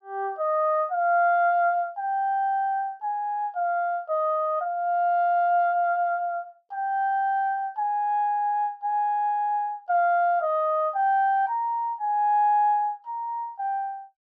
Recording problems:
none

